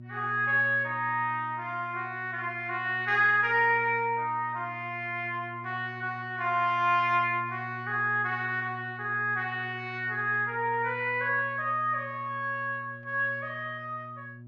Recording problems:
electrical hum; 60 Hz, harmonics up to 600 Hz, SNR 17 dB

